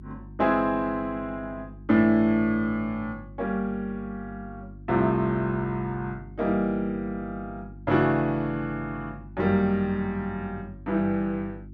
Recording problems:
electrical hum; 50 Hz, harmonics up to 350 Hz, SNR 18 dB

